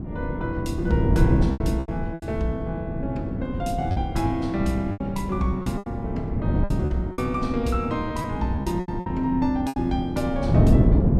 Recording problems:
wind on the microphone; below 220 Hz, SNR -1 dB
packet loss; 9% of the sound replaced, filled with repeated pitch periods

